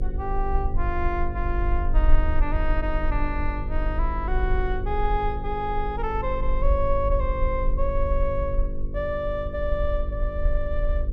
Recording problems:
electrical hum; 50 Hz, harmonics up to 550 Hz, SNR 8 dB
rumble; below 50 Hz, strongest tone 22 Hz, SNR 0 dB

